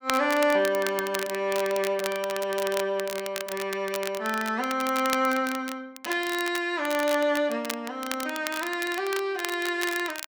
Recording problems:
crackling; vinyl, SNR 10 dB

